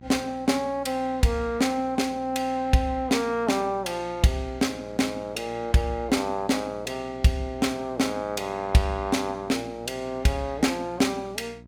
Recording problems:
electrical hum; 60 Hz, harmonics up to 960 Hz, SNR 22 dB

